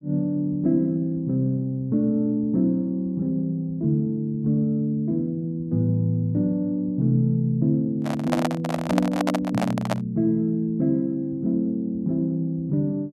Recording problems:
microphone handling noise; from 8 to 10 s; peak +3 dB vs average level

